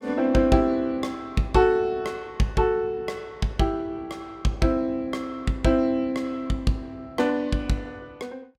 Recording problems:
none

